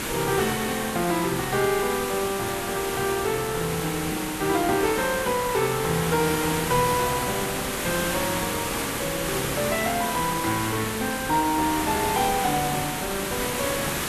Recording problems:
background hiss; slope -3 dB per octave, SNR 3 dB

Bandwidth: 13.5 kHz